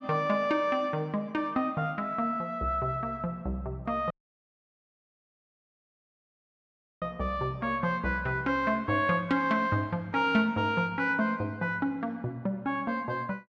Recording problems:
dropout; at 4 s for 3 s

